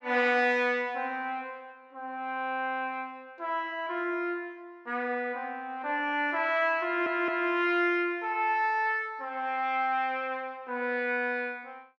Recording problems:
stutter; at 7 s

